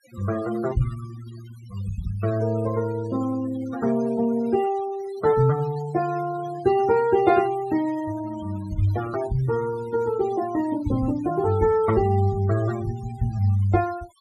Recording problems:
denoising artefacts; signal-to-artefact ratio 18 dB

